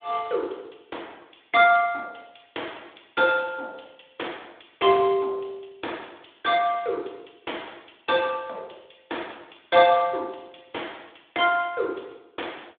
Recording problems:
phone line; 320 Hz to 3.7 kHz, Speex

